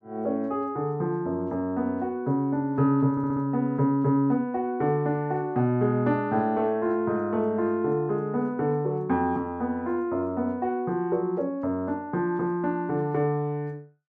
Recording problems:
audio stuttering; at 3 s

